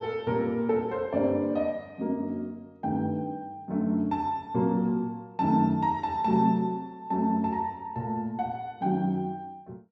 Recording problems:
treble cut off; nothing above 8 kHz

